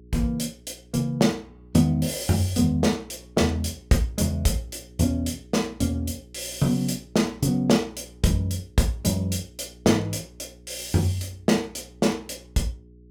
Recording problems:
hum; 60 Hz, harmonics up to 420 Hz, SNR 25 dB

